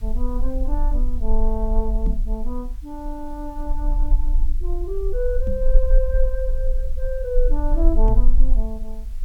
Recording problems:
hiss; SNR 26 dB
rumble; below 36 Hz, strongest tone 16 Hz, SNR -5 dB
microphone bump; at 2 s, at 5.5 s and at 8 s; peak +6 dB vs average level

